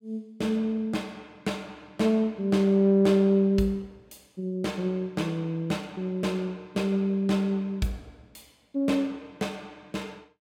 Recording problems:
none

